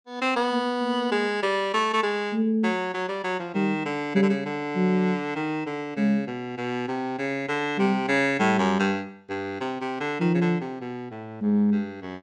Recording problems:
none

